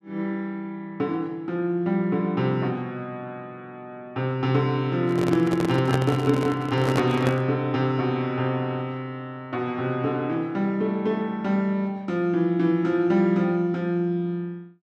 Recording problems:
handling noise; from 5 to 7.5 s; peak +2 dB vs average level

